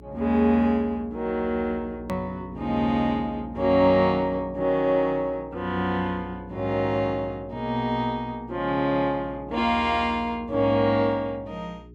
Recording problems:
hum; 60 Hz, harmonics up to 420 Hz, SNR 19 dB
edit click; at 2 s

